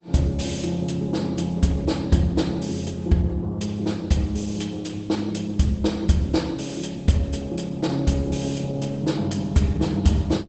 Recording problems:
codec artefacts; Opus, log-spectral distance 4 dB, nothing above 8 kHz

